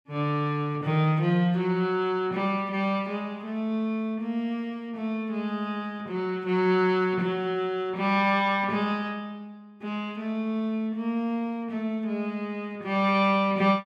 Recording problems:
none

